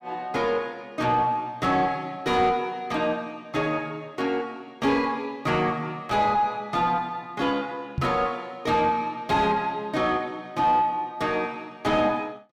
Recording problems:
distortion; soft clipping, signal-to-distortion ratio 10 dB
knock on the microphone; at 8 s; peak +1 dB vs average level

